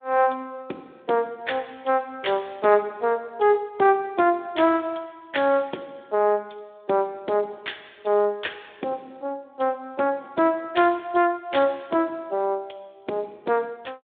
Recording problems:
phone line; 280 Hz to 3.6 kHz, Speex

